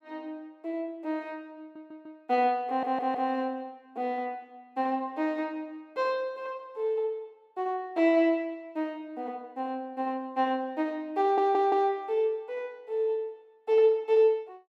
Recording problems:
audio stuttering; at 1.5 s, at 2.5 s and at 11 s

